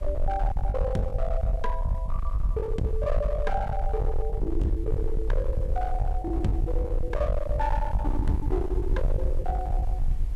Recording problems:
distortion; hard clipping, signal-to-distortion ratio 8 dB
background hiss; slope -6 dB per octave, SNR 25 dB
low-frequency rumble; below 62 Hz, SNR -1 dB
packet loss; 14% of the sound replaced, filled with the last packet

